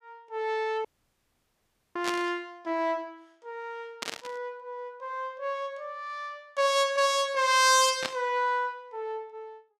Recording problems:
audio cutting out; at 1 s for 1 s
static burst; at 2 s, at 4 s and at 8 s; peak +1 dB vs average level

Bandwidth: 15 kHz